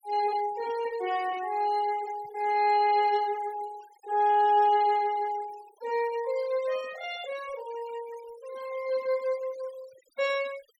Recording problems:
noise reduction artefacts; signal-to-artefact ratio 20 dB

